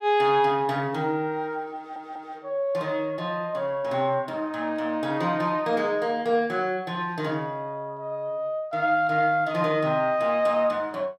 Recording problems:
stutter; at 2 s

